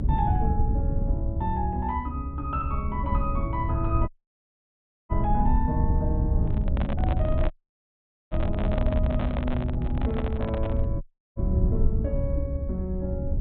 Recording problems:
low-pass filter; nothing above 4 kHz
rumble; below 98 Hz, SNR -3 dB
dropout; at 4 s for 1 s, at 7.5 s for 1 s and at 11 s
handling noise; from 6.5 to 11 s; peak +2 dB vs average level

